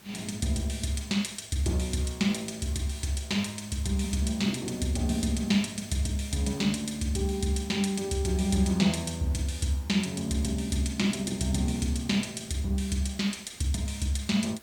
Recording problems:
background hiss; slope -2 dB per octave, SNR 22 dB

